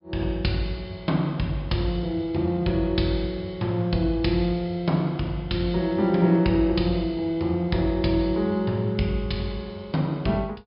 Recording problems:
low-pass filter; nothing above 5.5 kHz

